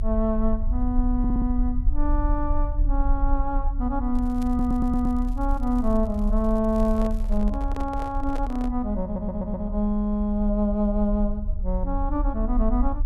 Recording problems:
low-frequency rumble; below 46 Hz, strongest tone 34 Hz, SNR 3 dB
audio stuttering; at 1 s, at 4.5 s and at 9 s
crackle; from 4 to 7.5 s; loose cable, SNR 29 dB
handling noise; from 6.5 to 8.5 s; peak -7 dB vs average level

